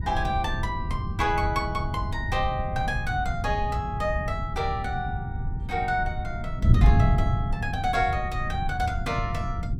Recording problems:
wind noise; below 130 Hz, SNR 0 dB

